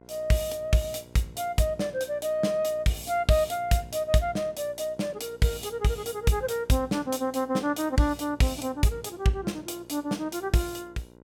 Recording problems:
mains hum; 60 Hz, harmonics up to 1.6 kHz, SNR 24 dB

